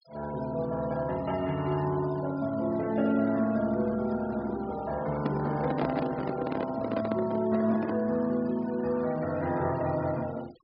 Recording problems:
low-pass filter; nothing above 5.5 kHz
noise reduction artefacts; signal-to-artefact ratio 19 dB
handling noise; from 5 to 8 s; peak +1 dB vs average level

